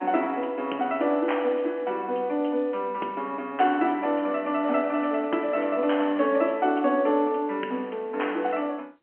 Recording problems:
phone line; 220 Hz to 3.2 kHz, G.711

